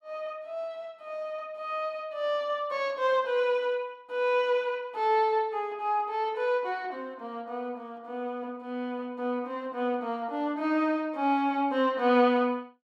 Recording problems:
none

